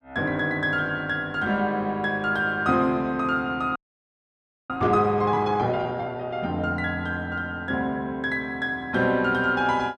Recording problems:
frozen audio; at 4 s for 1 s

